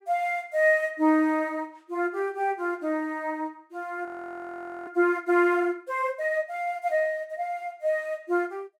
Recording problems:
audio freezing; at 4 s for 1 s

